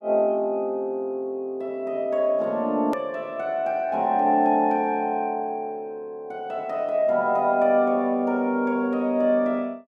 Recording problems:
edit click; at 3 s

